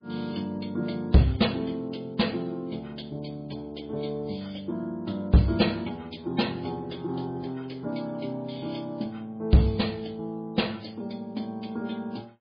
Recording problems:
lossy compression; MP3, log-spectral distance 5 dB, nothing above 4.8 kHz
distortion; hard clipping, signal-to-distortion ratio 12 dB

